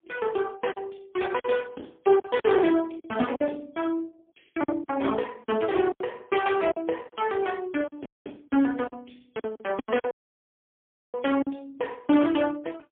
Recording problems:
telephone audio; 220 Hz to 3.4 kHz, AMR-NB, then MP3
packet loss; 8% of the sound replaced, filled with silence
dropout; at 8 s and at 10 s for 1 s

